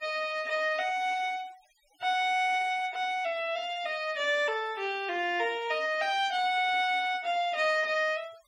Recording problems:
denoising artefacts; signal-to-artefact ratio 24 dB

